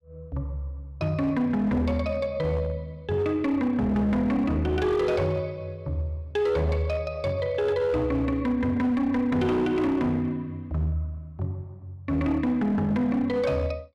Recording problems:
distortion; hard clipping, uneven, signal-to-distortion ratio 12 dB

